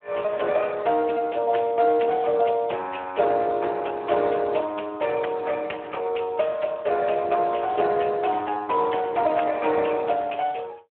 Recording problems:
phone line; 320 Hz to 3.1 kHz, Speex

